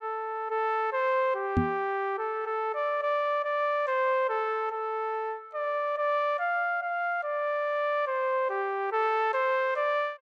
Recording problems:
microphone bump; at 1.5 s; peak +6 dB vs average level

